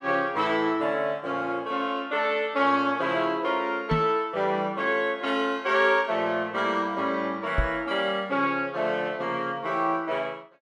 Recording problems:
microphone thump; at 4 s and at 7.5 s; peak +3 dB vs average level

